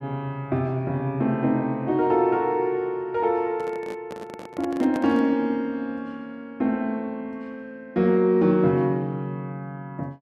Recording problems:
microphone handling noise; from 3.5 to 5.5 s; peak -6 dB vs average level

